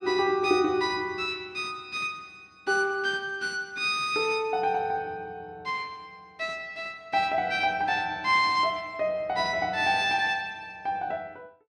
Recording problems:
none

